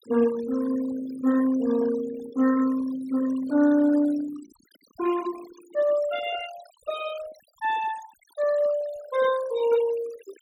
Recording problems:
noise reduction artefacts; signal-to-artefact ratio 17 dB

